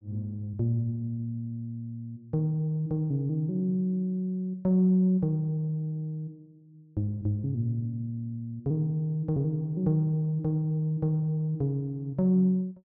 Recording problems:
none

